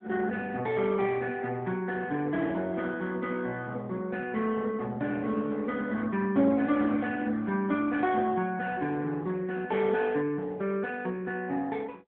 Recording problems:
telephone audio; 130 Hz to 3.5 kHz, AMR-NB

